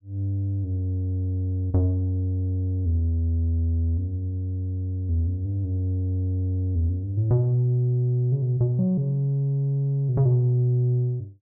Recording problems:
none

